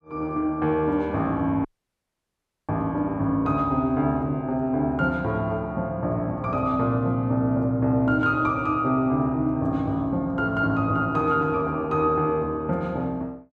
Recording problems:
dropout; at 1.5 s for 1 s

